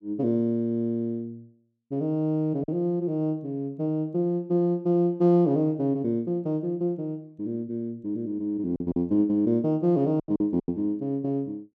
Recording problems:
lost packets; 3% of the sound replaced, filled with silence

